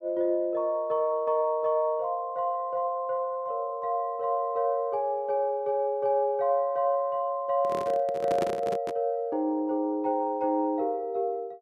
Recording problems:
handling noise; from 7.5 to 9 s; peak 0 dB vs average level

